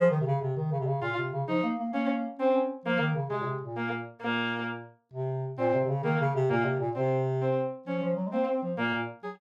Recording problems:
none

